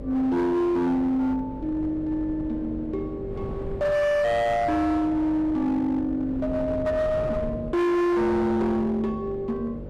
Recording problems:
distortion; hard clipping, signal-to-distortion ratio 8 dB
hum; 50 Hz, harmonics up to 750 Hz, SNR 15 dB
wind on the microphone; below 320 Hz, SNR 15 dB

